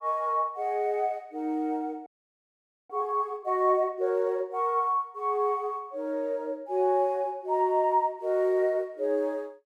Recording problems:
frozen audio; at 2 s for 1 s

